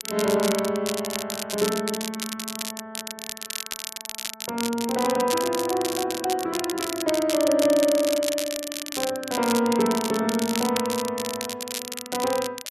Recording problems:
crackling; vinyl, SNR 6 dB

